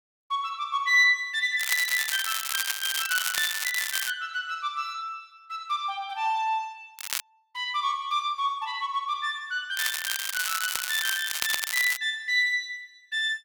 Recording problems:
crackling; from 1.5 to 4 s, at 7 s and from 10 to 12 s; loose cable, SNR 2 dB

